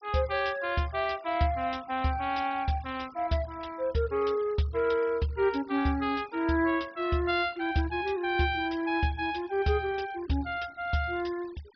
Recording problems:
treble cut off; nothing above 5.5 kHz
noise reduction artefacts; signal-to-artefact ratio 22 dB

